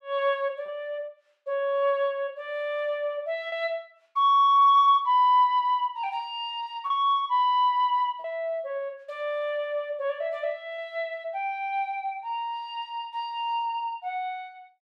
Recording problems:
packet loss; 1.4% of the sound replaced, filled with repeated pitch periods

